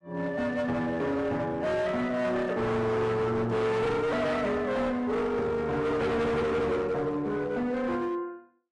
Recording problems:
codec artefacts; AAC, log-spectral distance 2 dB, nothing above 10.4 kHz
distortion; hard clipping, signal-to-distortion ratio 7 dB

